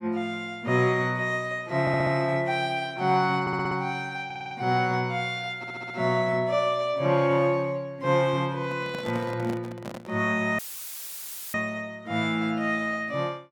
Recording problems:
stutter; 4 times, first at 2 s
handling noise; from 8.5 to 10 s; peak -6 dB vs average level
audio cutting out; at 11 s for 1 s; filled with static

